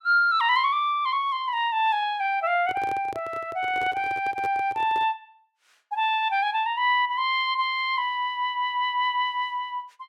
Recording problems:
microphone handling noise; from 2.5 to 5 s; peak -9 dB vs average level

